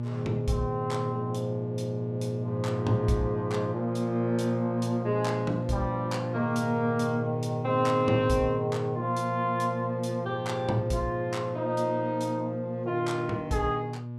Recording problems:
electrical hum; 60 Hz, harmonics up to 840 Hz, SNR 5 dB

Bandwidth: 14.5 kHz